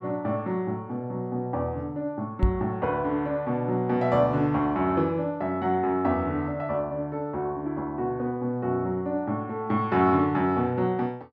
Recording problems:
knock on the microphone; at 2.5 s; peak +6 dB vs average level

